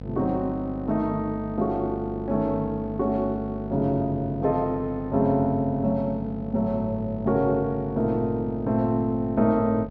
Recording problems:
hum; 50 Hz, harmonics up to 1 kHz, SNR 12 dB

